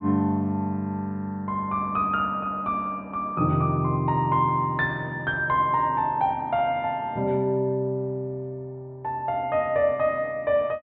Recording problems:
low-pass filter; nothing above 4 kHz

